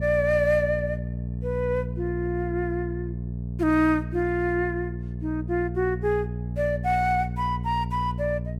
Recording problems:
electrical hum; 60 Hz, harmonics up to 480 Hz, SNR 6 dB

